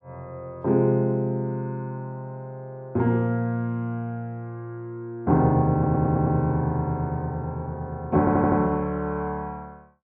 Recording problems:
stutter; at 5.5 s and at 8 s

